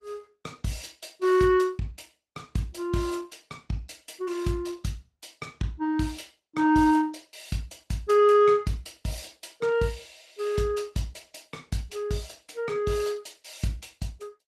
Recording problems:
codec artefacts; Opus, log-spectral distance 4 dB, nothing above 14.3 kHz

